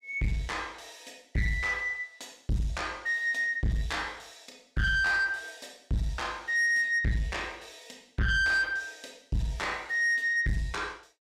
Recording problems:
distortion; soft clipping, signal-to-distortion ratio 8 dB

